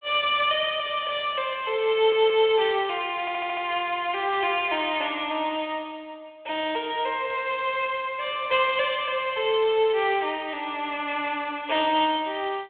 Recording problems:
telephone audio; 320 Hz to 3.5 kHz, G.726
audio stuttering; at 2 s and at 3 s

